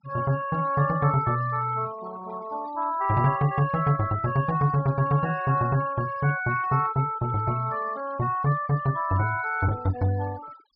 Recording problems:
low-pass filter; nothing above 5.5 kHz
denoising artefacts; signal-to-artefact ratio 21 dB

